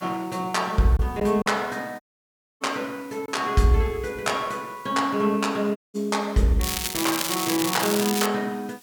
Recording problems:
hiss; SNR 26 dB
packet loss; 1% of the sound replaced, filled with silence
audio cutting out; at 2 s for 0.5 s and at 6 s
crackle; from 6.5 to 8.5 s; loose cable, SNR 2 dB

